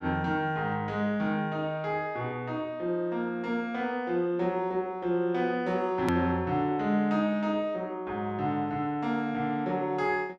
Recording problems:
hard cut with a click; at 6 s

